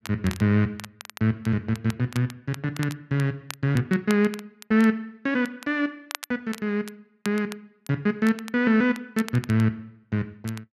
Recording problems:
crackle; vinyl, SNR 17 dB

